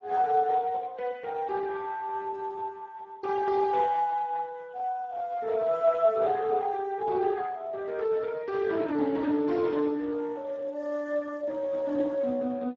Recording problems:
codec artefacts; Speex, log-spectral distance 3 dB

